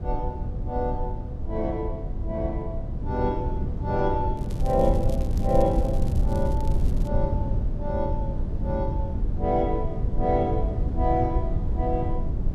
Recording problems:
rumble; below 100 Hz, SNR 0 dB
crackling; from 4.5 to 7 s; loose cable, SNR 21 dB

